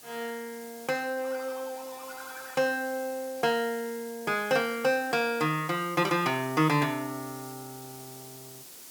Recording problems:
background hiss; SNR 16 dB

